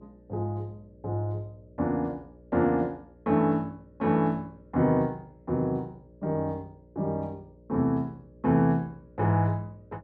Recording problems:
hum; 60 Hz, harmonics up to 600 Hz, SNR 26 dB

